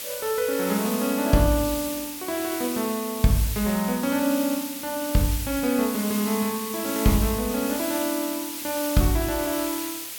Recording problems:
background hiss; slope +1 dB per octave, SNR 6 dB

